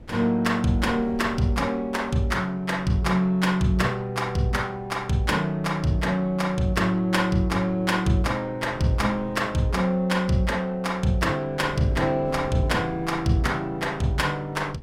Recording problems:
wind on the microphone; below 310 Hz, SNR 20 dB

